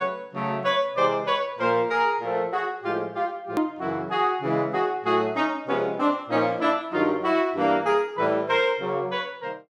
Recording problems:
click at an edit; at 3.5 s

